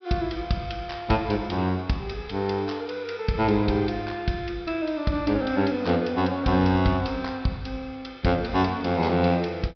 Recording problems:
low-pass filter; nothing above 5.5 kHz

